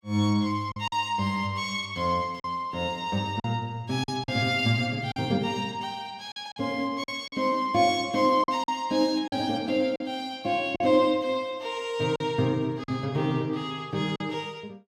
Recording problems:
packet loss; 5% of the sound replaced, filled with silence

